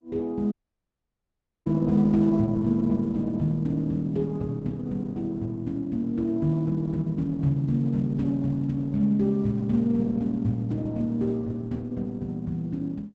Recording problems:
codec artefacts; Opus, log-spectral distance 2 dB, nothing above 7.8 kHz
dropout; at 0.5 s for 1 s

